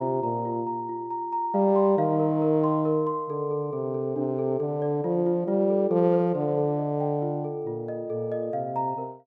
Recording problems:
none

